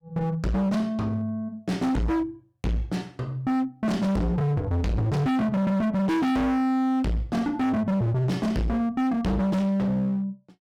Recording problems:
distorted audio; hard clipping, uneven, signal-to-distortion ratio 6 dB

